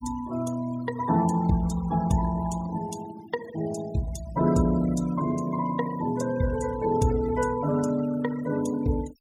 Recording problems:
denoising artefacts; signal-to-artefact ratio 17 dB

